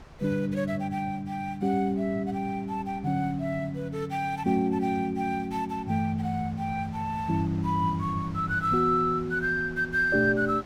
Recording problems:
wind on the microphone; below 720 Hz, SNR 21 dB

